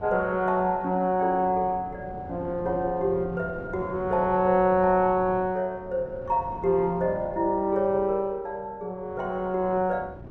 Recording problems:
wind noise; below 390 Hz, SNR 18 dB

